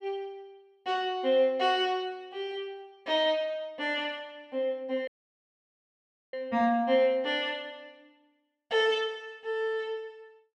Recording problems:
dropout; at 5 s for 1.5 s

